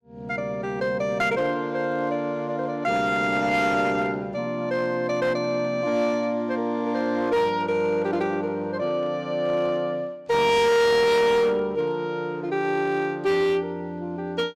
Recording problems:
distortion; hard clipping, signal-to-distortion ratio 7 dB

